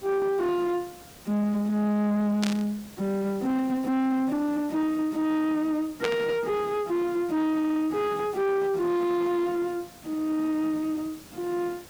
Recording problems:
distortion; soft clipping, signal-to-distortion ratio 11 dB
background hiss; slope -3 dB per octave, SNR 21 dB
burst of static; at 2.5 s and at 6 s; peak +1 dB vs average level
audio stuttering; at 7.5 s

